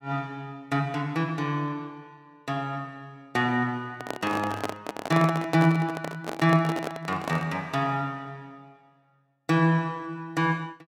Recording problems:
microphone handling noise; from 4 to 7.5 s; peak +2 dB vs average level

